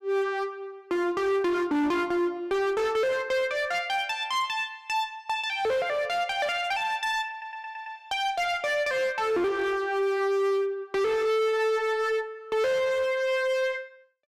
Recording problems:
distortion; hard clipping, signal-to-distortion ratio 8 dB
audio stuttering; at 7.5 s

